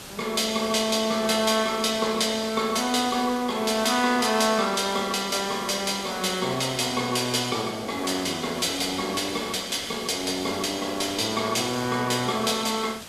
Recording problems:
hiss; slope -2 dB per octave, SNR 16 dB

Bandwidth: 14 kHz